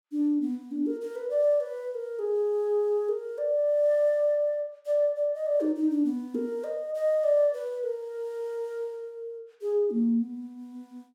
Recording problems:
none

